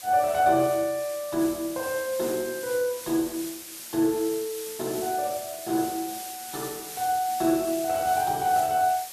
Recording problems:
background hiss; slope +1 dB per octave, SNR 11 dB

